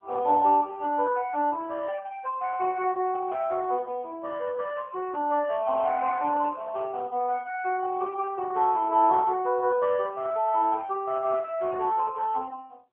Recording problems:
telephone audio; 260 Hz to 3.3 kHz, AMR-NB

